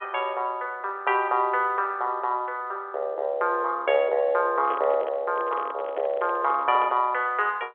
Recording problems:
telephone audio; 340 Hz to 3.6 kHz, G.711
handling noise; from 4.5 to 7 s; peak -5 dB vs average level

